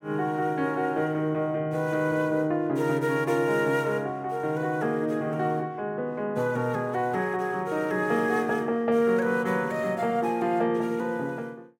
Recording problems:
none

